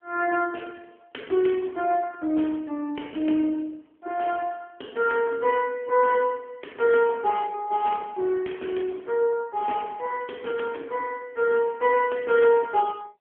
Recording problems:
telephone audio; 240 Hz to 2.7 kHz, AMR-NB

